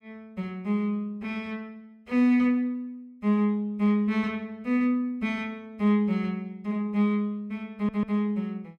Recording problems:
stutter; at 7.5 s

